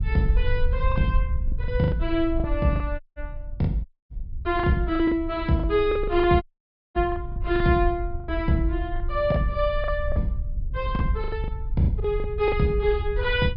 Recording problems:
low-pass filter; nothing above 5.5 kHz
rumble; below 68 Hz, SNR 6 dB
lost packets; 11% of the sound replaced, filled with the last packet
audio cutting out; at 3 s, at 4 s and at 6.5 s for 0.5 s

